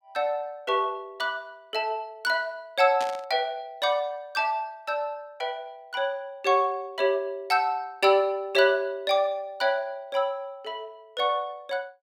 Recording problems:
burst of static; at 3 s; peak -5 dB vs average level

